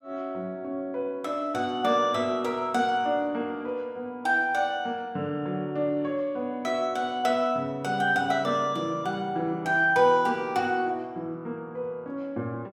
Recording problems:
none

